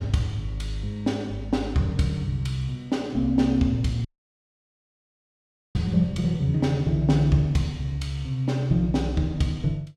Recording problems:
dropout; at 4 s for 1.5 s

